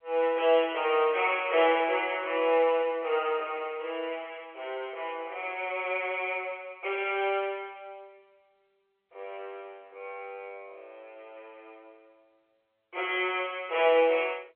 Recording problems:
telephone audio; 340 Hz to 3.3 kHz, G.711

